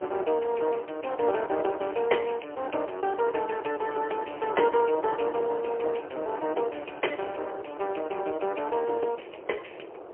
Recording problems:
phone line; 300 Hz to 3.1 kHz, AMR-NB, then MP3
wind noise; below 740 Hz, SNR 14 dB

